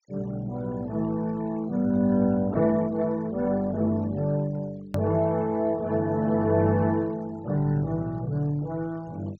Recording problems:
low-pass filter; nothing above 8 kHz
noise reduction artefacts; signal-to-artefact ratio 26 dB
click at an edit; at 5 s

